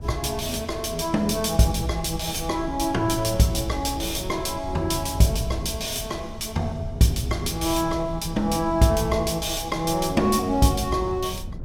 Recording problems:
wind on the microphone; below 120 Hz, SNR 13 dB

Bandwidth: 17 kHz